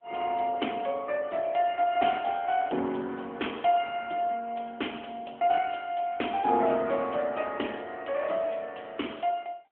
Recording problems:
phone line; 240 Hz to 3.3 kHz, AMR-NB

